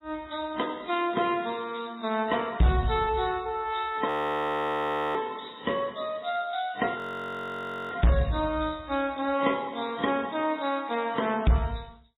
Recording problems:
lossy codec; AAC, then MP3, log-spectral distance 9 dB, nothing above 3.8 kHz
distorted audio; hard clipping, signal-to-distortion ratio 11 dB
audio freezing; at 4 s for 1 s and at 7 s for 1 s

